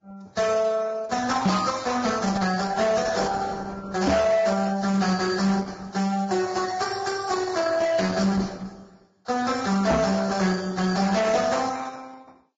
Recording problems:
codec artefacts; Opus, then Vorbis, log-spectral distance 5 dB, nothing above 7.3 kHz
distortion; hard clipping, signal-to-distortion ratio 11 dB
microphone thump; at 1.5 s, at 4 s and at 10 s; peak +6 dB vs average level

